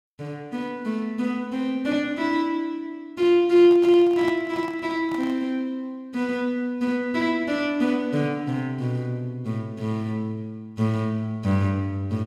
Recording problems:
microphone handling noise; from 3.5 to 5.5 s; peak -7 dB vs average level

